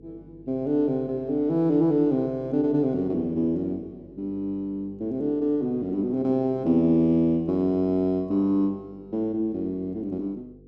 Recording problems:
hum; 50 Hz, harmonics up to 500 Hz, SNR 26 dB

